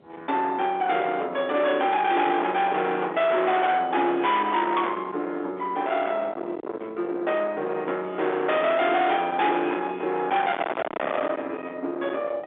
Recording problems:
telephone audio; 280 Hz to 3.8 kHz, G.711
distorted audio; soft clipping, signal-to-distortion ratio 4 dB
wind on the microphone; below 1.4 kHz, SNR 12 dB

